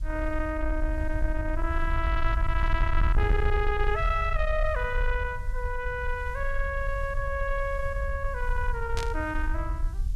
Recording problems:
distortion; soft clipping, signal-to-distortion ratio 12 dB
background hiss; slope 0 dB per octave, SNR 29 dB
rumble; below 62 Hz, SNR 1 dB
burst of static; at 9 s; peak -1 dB vs average level

